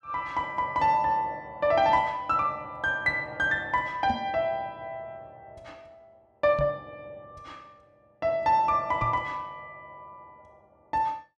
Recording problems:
knock on the microphone; at 4 s, at 6.5 s and at 9 s; peak -2 dB vs average level

